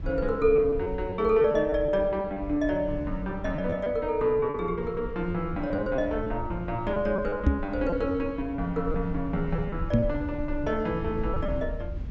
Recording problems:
treble cut off; nothing above 8 kHz
rumble; below 82 Hz, SNR 11 dB
packet loss; 8% of the sound replaced, filled with repeated pitch periods
knock on the microphone; at 7.5 s and at 10 s; peak +9 dB vs average level

